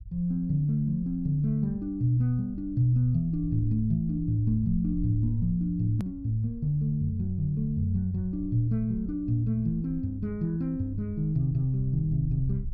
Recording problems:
low-frequency rumble; below 78 Hz, SNR 14 dB
hard cut with a click; at 6 s

